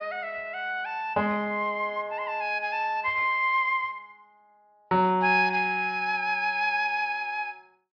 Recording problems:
treble missing; nothing above 5.5 kHz

